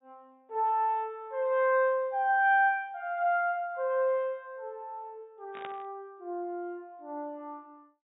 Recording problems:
treble missing; nothing above 4 kHz
static burst; at 5.5 s; peak -9 dB vs average level

